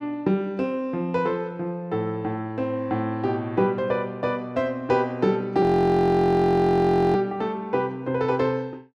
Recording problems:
frozen audio; at 5.5 s for 1.5 s

